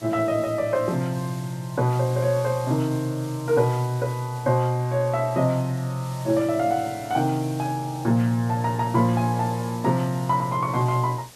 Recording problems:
hiss; SNR 20 dB

